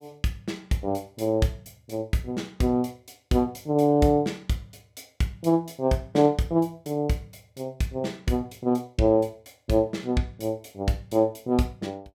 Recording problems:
none

